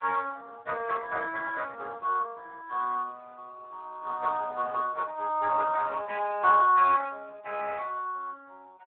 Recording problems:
phone line; 280 Hz to 3.3 kHz, Speex

